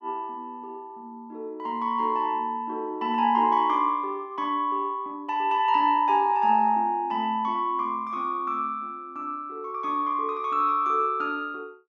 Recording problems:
none

